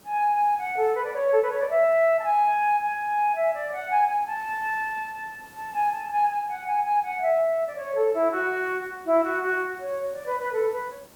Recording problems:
background hiss; slope -4 dB per octave, SNR 27 dB

